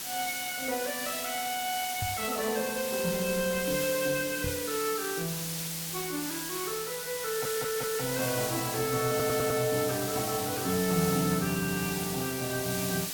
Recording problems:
lossy codec; Opus, then AAC, log-spectral distance 3 dB
hiss; slope +1 dB per octave, SNR 3 dB
microphone bump; at 2 s and at 4.5 s; peak -1 dB vs average level
stutter; at 7.5 s and at 9 s

